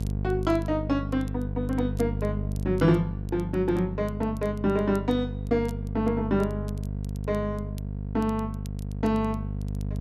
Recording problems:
hum; 50 Hz, harmonics up to 500 Hz, SNR 5 dB
crackling; vinyl, SNR 27 dB

